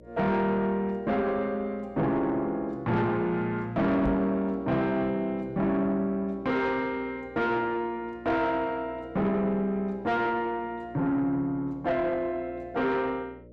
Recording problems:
distorted audio; soft clipping, signal-to-distortion ratio 10 dB
electrical hum; 60 Hz, harmonics up to 600 Hz, SNR 23 dB
knock on the microphone; at 4 s; peak +1 dB vs average level

